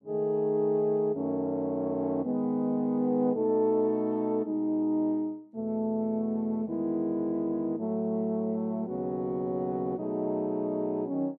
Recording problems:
none

